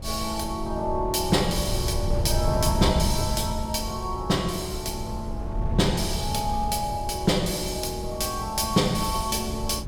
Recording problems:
wind on the microphone; below 130 Hz, SNR 5 dB

